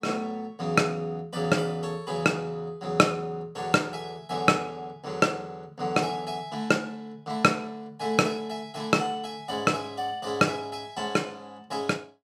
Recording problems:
none

